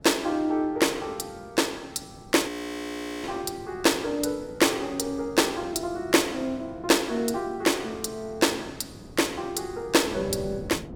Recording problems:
wind noise; below 370 Hz, SNR 18 dB
audio freezing; at 2.5 s for 1 s

